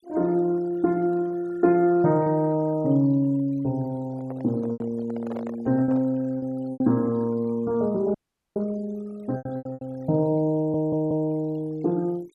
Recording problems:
denoising artefacts; signal-to-artefact ratio 27 dB
lost packets; 5% of the sound replaced, filled with repeated pitch periods
handling noise; from 4 to 6 s; peak -8 dB vs average level
audio cutting out; at 8 s
audio stuttering; at 11 s

